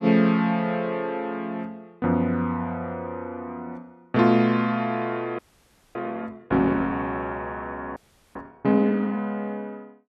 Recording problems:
audio freezing; at 5.5 s for 0.5 s and at 8 s

